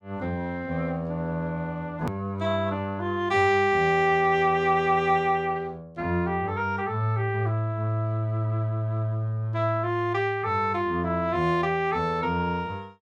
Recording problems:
hard cut with a click; at 2 s

